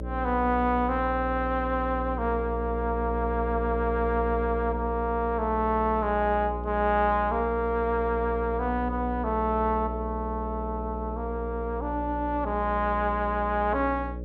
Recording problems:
hum; 60 Hz, harmonics up to 600 Hz, SNR 7 dB

